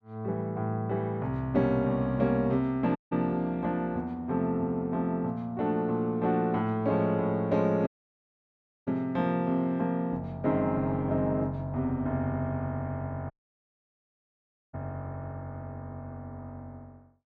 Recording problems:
dropout; at 3 s, at 8 s for 1 s and at 13 s for 1.5 s

